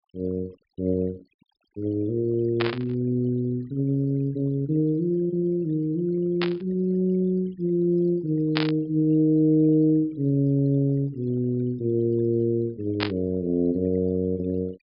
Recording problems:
low-pass filter; nothing above 5.2 kHz
noise reduction artefacts; signal-to-artefact ratio 25 dB
static burst; 4 times, first at 2.5 s; peak +2 dB vs average level

